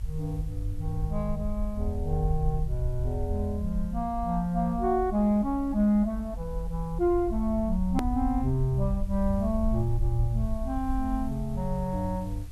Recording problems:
hiss; slope -2 dB per octave, SNR 29 dB
low-frequency rumble; below 64 Hz, SNR 6 dB
hard cut with a click; at 8 s

